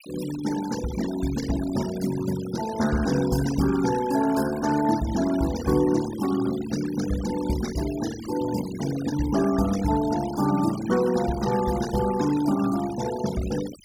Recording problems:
noise reduction artefacts; signal-to-artefact ratio 13 dB

